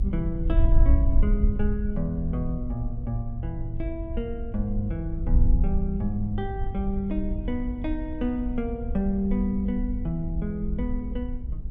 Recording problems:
electrical hum; 50 Hz, harmonics up to 850 Hz, SNR 23 dB
low-frequency rumble; below 68 Hz, SNR 6 dB
wind on the microphone; below 58 Hz, SNR 1 dB

